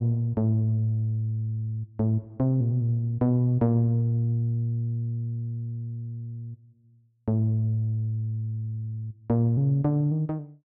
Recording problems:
none

